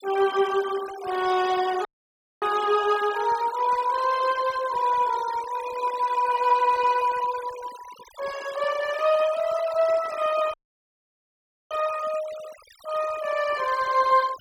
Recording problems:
noise reduction artefacts; signal-to-artefact ratio 16 dB
dropout; at 2 s for 0.5 s and at 11 s for 1 s

